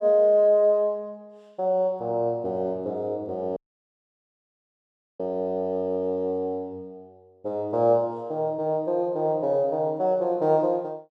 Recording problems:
dropout; at 3.5 s for 1.5 s

